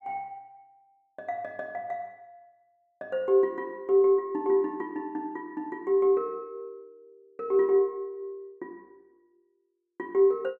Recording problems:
none

